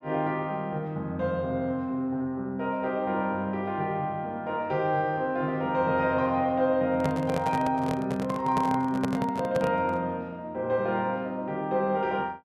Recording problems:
handling noise; from 7 to 10 s; peak +1 dB vs average level

